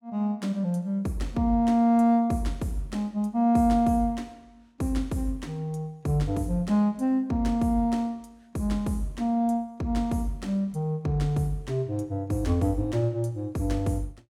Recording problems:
none

